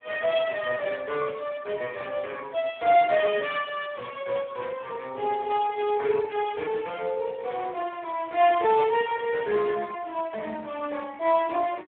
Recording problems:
telephone audio; 280 Hz to 3.4 kHz, Speex

